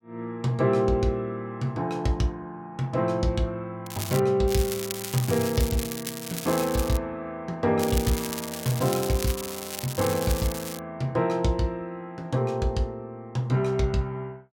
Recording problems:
crackling; at 4 s, from 4.5 to 7 s and from 8 to 11 s; loose cable, SNR 8 dB

